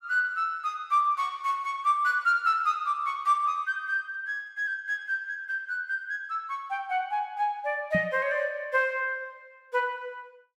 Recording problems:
knock on the microphone; at 8 s; peak +2 dB vs average level

